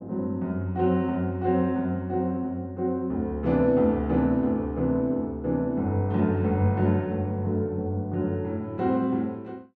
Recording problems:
none

